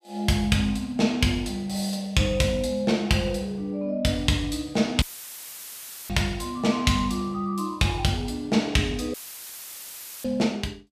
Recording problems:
audio cutting out; at 5 s for 1 s and at 9 s for 1 s; filled with static

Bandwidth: 14.5 kHz